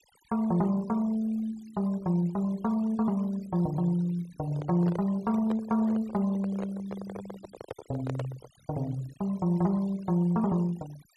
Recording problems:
denoising artefacts; signal-to-artefact ratio 23 dB
handling noise; from 4.5 to 8.5 s; peak -4 dB vs average level

